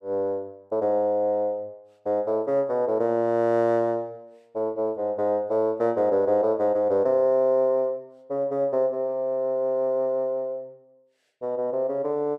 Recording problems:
none

